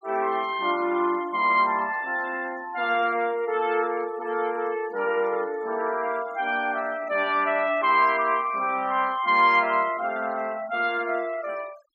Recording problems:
noise reduction artefacts; signal-to-artefact ratio 22 dB

